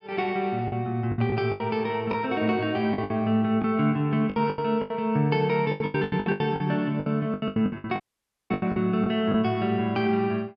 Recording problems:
packet loss; 15% of the sound replaced, filled with the last packet
audio cutting out; at 8 s for 0.5 s

